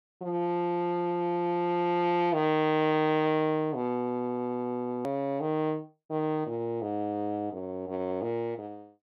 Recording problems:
edit click; at 5 s

